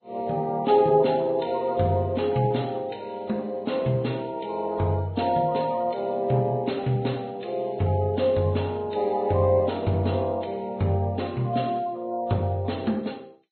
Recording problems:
lossy compression; MP2, then Vorbis, log-spectral distance 3 dB, nothing above 4.2 kHz

